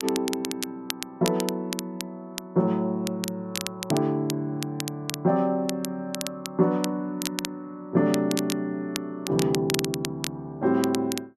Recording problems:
crackle; vinyl, SNR 8 dB

